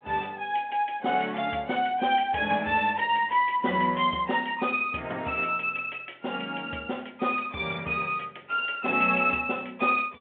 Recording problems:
phone line; 220 Hz to 3.5 kHz, G.726

